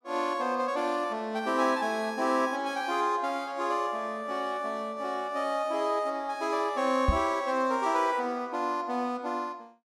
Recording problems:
microphone thump; at 7 s; peak +6 dB vs average level

